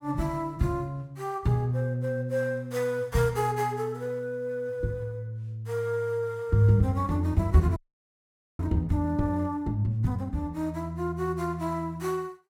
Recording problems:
frozen audio; at 8 s for 1 s

